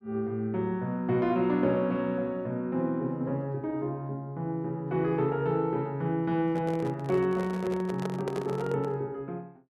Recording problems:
handling noise; from 6.5 to 9 s; peak -2 dB vs average level

